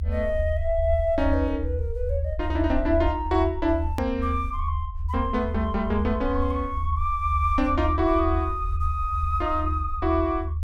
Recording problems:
low-frequency rumble; below 80 Hz, strongest tone 78 Hz, SNR 4 dB
edit click; at 4 s

